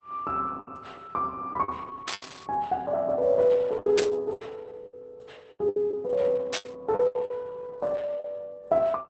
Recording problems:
codec artefacts; Opus, log-spectral distance 3 dB, nothing above 8 kHz
packet loss; 9% of the sound replaced, filled with the last packet
static burst; at 2 s, at 4 s and at 6.5 s; peak +1 dB vs average level

